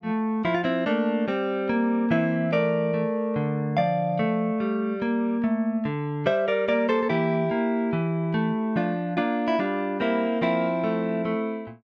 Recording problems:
none

